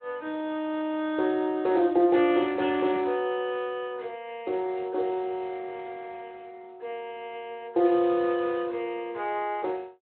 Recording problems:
telephone audio; 260 Hz to 3.9 kHz, Speex

